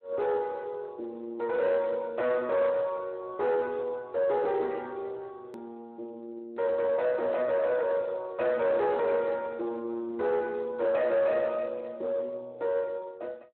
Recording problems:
phone line; 260 Hz to 2.5 kHz, Speex
distortion; soft clipping, signal-to-distortion ratio 11 dB
click at an edit; at 5.5 s

